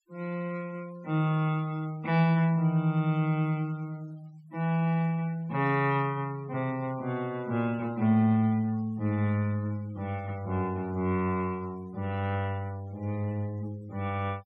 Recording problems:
denoising artefacts; signal-to-artefact ratio 25 dB

